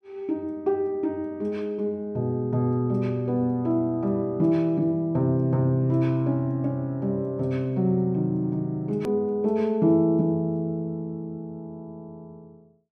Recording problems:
click at an edit; at 9 s

